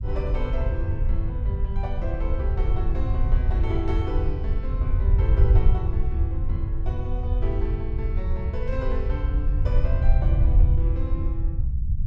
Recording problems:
rumble; below 78 Hz, SNR -9 dB

